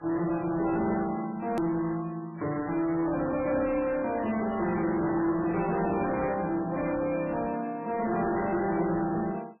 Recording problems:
lossy codec; MP3, then MP3, log-spectral distance 3 dB, nothing above 2.4 kHz
distortion; soft clipping, signal-to-distortion ratio 9 dB
edit click; at 1.5 s

